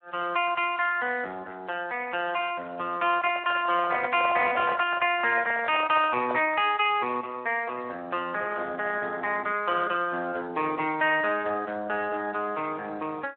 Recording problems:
phone line; 320 Hz to 3.5 kHz, Speex
microphone handling noise; from 3 to 6.5 s; peak -1 dB vs average level

